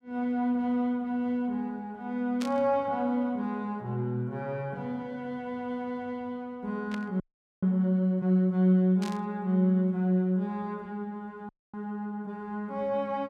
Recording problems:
static burst; at 2.5 s, at 7 s and at 9 s; peak -6 dB vs average level
audio freezing; at 7 s and at 11 s

